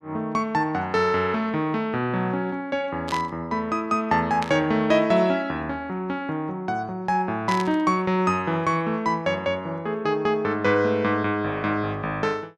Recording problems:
burst of static; at 3 s, at 4.5 s and at 7.5 s; peak -4 dB vs average level

